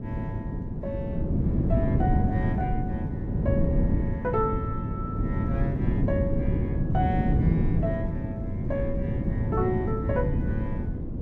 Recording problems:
wind noise; below 230 Hz, SNR -5 dB

